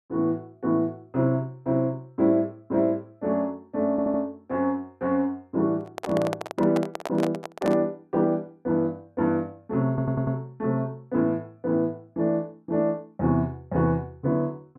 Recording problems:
audio stuttering; at 4 s and at 10 s
handling noise; from 6 to 8 s; peak 0 dB vs average level

